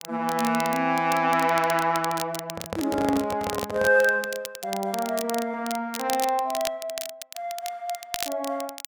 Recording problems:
crackle; vinyl, SNR 11 dB
microphone handling noise; from 2.5 to 4 s; peak -1 dB vs average level

